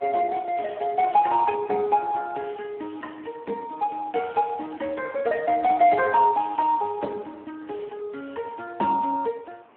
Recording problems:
phone line; 240 Hz to 2.8 kHz, Speex
hiss; SNR 30 dB

